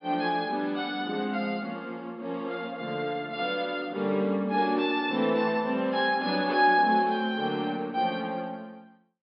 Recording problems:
treble cut off; nothing above 5.3 kHz

